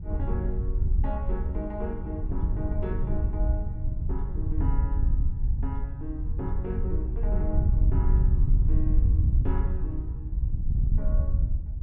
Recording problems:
wind noise; below 78 Hz, SNR -10 dB

